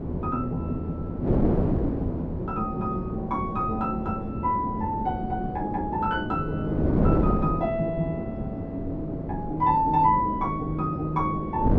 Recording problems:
wind noise; below 370 Hz, SNR 2 dB

